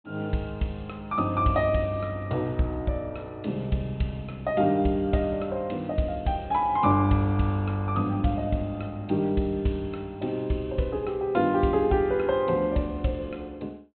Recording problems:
treble missing; nothing above 4 kHz

